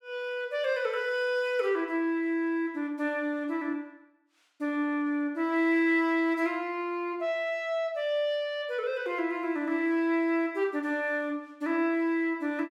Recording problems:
none

